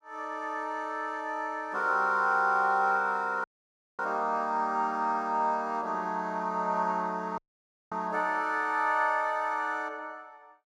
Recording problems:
audio cutting out; at 3.5 s for 0.5 s and at 7.5 s for 0.5 s

